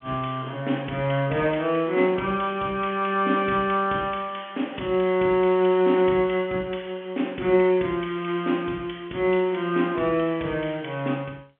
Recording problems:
telephone audio; 220 Hz to 3.3 kHz, G.711

